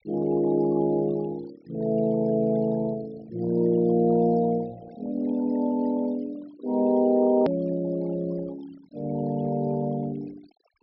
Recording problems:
low-pass filter; nothing above 5.4 kHz
denoising artefacts; signal-to-artefact ratio 23 dB
hard cut with a click; at 7.5 s

